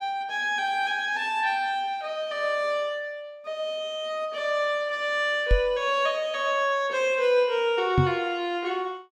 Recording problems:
microphone thump; at 5.5 s and at 8 s; peak +7 dB vs average level

